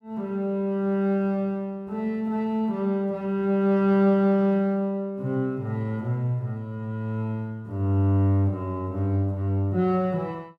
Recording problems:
none

